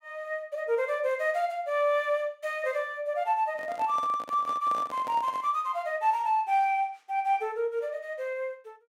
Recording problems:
handling noise; from 3.5 to 5.5 s; peak -9 dB vs average level

